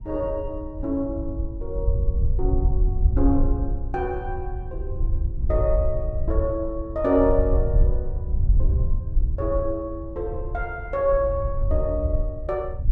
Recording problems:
wind noise; below 72 Hz, SNR 0 dB

